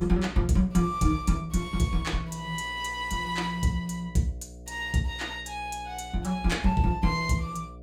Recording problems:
hum; 60 Hz, harmonics up to 720 Hz, SNR 18 dB

